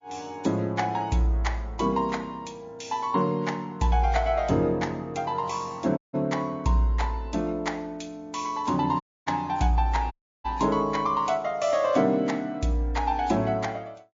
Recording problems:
codec artefacts; MP3, log-spectral distance 3 dB
dropout; at 6 s, at 9 s and at 10 s

